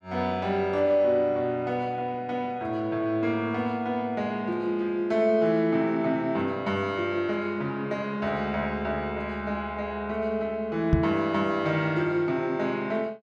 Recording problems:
microphone bump; at 11 s; peak +8 dB vs average level

